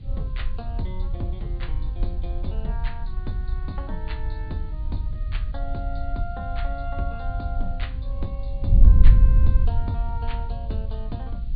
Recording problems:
treble cut off; nothing above 4.6 kHz
background hiss; SNR 25 dB
wind on the microphone; below 62 Hz, SNR -10 dB

